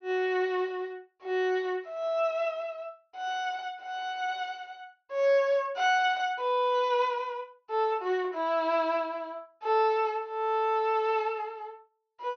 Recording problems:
treble cut off; nothing above 6.5 kHz

